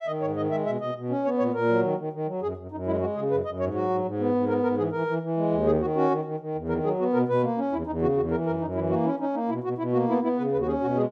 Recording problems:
none

